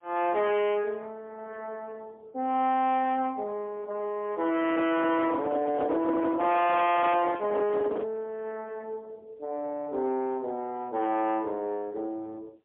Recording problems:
phone line; 220 Hz to 3.4 kHz, AMR-NB, then MP3
distortion; soft clipping, signal-to-distortion ratio 7 dB
microphone handling noise; from 4.5 to 8 s; peak +1 dB vs average level

